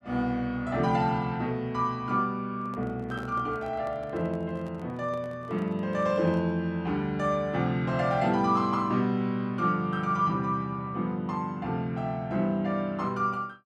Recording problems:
microphone handling noise; from 2.5 to 6.5 s; peak -12 dB vs average level

